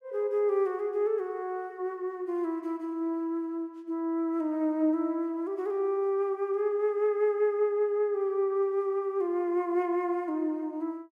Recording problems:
none

